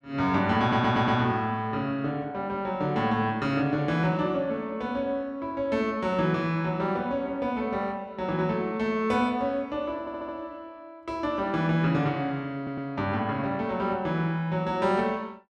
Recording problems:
audio stuttering; at 0.5 s, at 10 s and at 13 s

